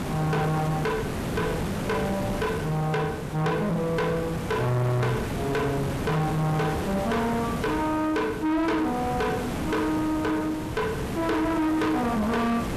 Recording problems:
distorted audio; soft clipping, signal-to-distortion ratio 8 dB
hiss; slope -7 dB per octave, SNR 5 dB

